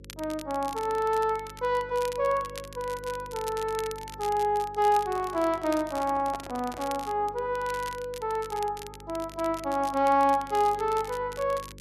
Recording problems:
electrical hum; 50 Hz, harmonics up to 550 Hz, SNR 21 dB
crackling; vinyl, SNR 17 dB
microphone handling noise; from 5 to 7 s; peak -6 dB vs average level

